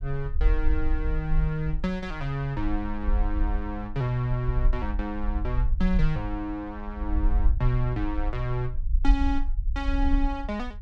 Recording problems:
low-frequency rumble; below 50 Hz, SNR 0 dB

